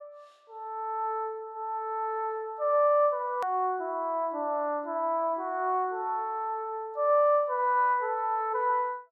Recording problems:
hard cut with a click; at 3.5 s

